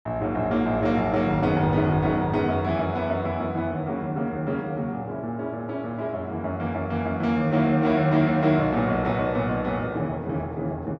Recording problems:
none

